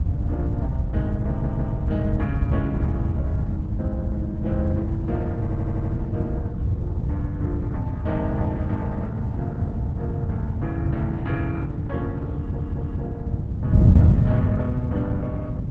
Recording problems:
codec artefacts; Opus, log-spectral distance 2 dB
rumble; below 140 Hz, SNR 4 dB
wind noise; below 130 Hz, SNR -7 dB
stutter; at 1.5 s, at 5.5 s and at 12 s

